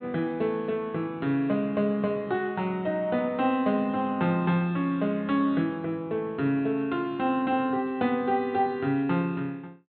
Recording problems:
treble cut off; nothing above 4.2 kHz

